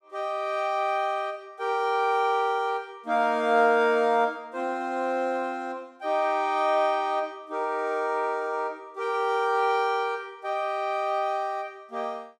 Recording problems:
none

